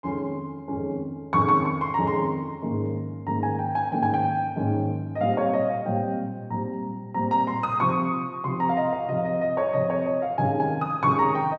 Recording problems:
none

